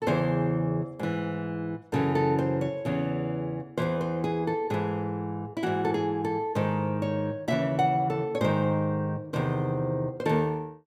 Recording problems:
none

